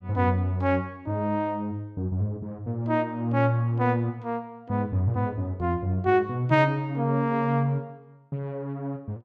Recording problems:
none

